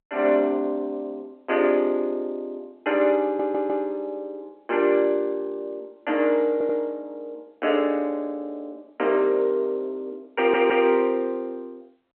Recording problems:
telephone audio; 220 Hz to 3.2 kHz, G.711
stutter; at 3 s, at 6.5 s and at 10 s

